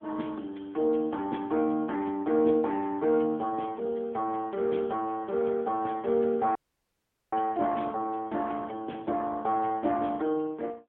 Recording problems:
telephone audio; 190 Hz to 3.5 kHz, AMR-NB
audio cutting out; at 6.5 s for 1 s

